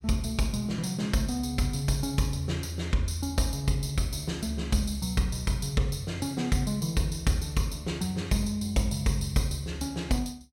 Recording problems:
none

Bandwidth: 16.5 kHz